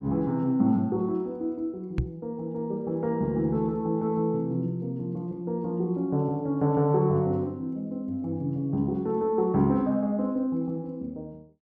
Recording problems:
microphone bump; at 2 s; peak +4 dB vs average level

